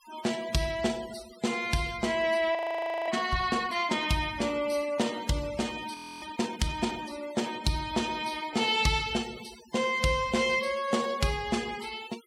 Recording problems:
denoising artefacts; signal-to-artefact ratio 16 dB
audio freezing; at 2.5 s for 0.5 s and at 6 s

